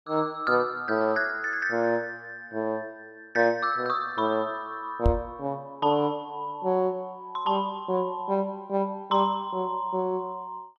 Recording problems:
knock on the microphone; at 5 s; peak +7 dB vs average level

